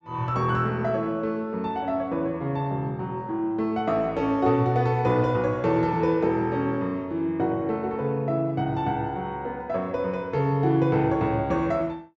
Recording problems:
low-pass filter; nothing above 8 kHz

